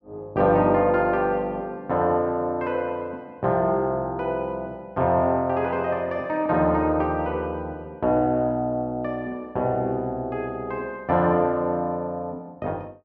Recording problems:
none

